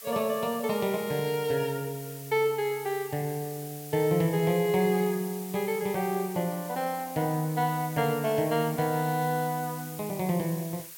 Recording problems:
background hiss; slope +2 dB per octave, SNR 13 dB

